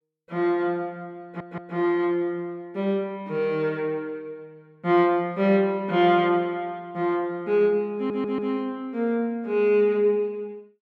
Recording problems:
stutter; at 1 s and at 8 s

